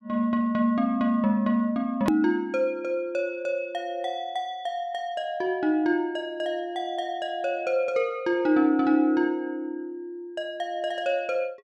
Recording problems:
hard cut with a click; at 2 s

